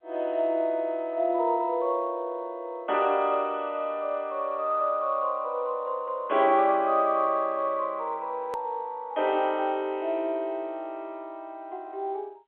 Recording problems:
phone line; 340 Hz to 3.6 kHz, G.711
click at an edit; at 8.5 s

